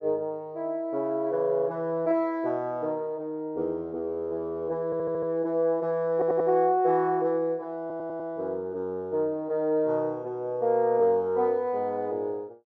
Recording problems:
stutter; at 5 s, at 6 s and at 8 s

